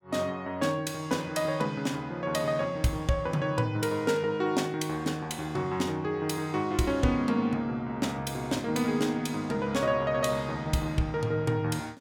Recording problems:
none

